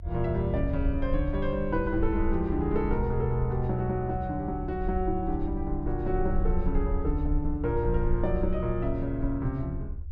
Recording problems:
low-frequency rumble; below 68 Hz, SNR 4 dB

